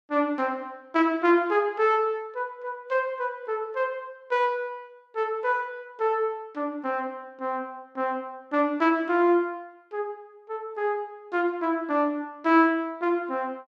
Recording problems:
none

